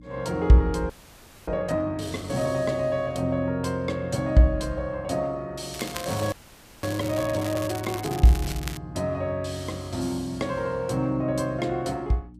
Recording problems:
mains hum; 60 Hz, harmonics up to 300 Hz, SNR 22 dB
audio freezing; at 1 s for 0.5 s and at 6.5 s for 0.5 s
crackling; from 5.5 to 9 s; loose cable, SNR 13 dB

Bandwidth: 14.5 kHz